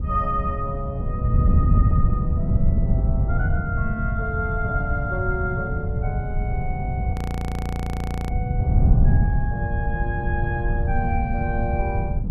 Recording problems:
wind noise; below 130 Hz, SNR -6 dB
audio freezing; at 7 s for 1 s

